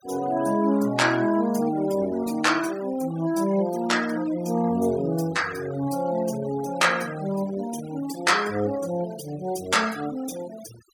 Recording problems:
noise reduction artefacts; signal-to-artefact ratio 17 dB

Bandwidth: 17 kHz